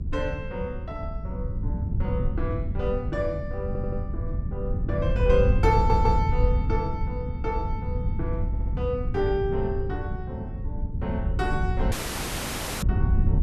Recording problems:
hum; 50 Hz, harmonics up to 300 Hz, SNR 18 dB
wind on the microphone; below 110 Hz, SNR -1 dB
audio stuttering; at 3.5 s, at 6 s and at 8.5 s
audio cutting out; at 12 s for 1 s

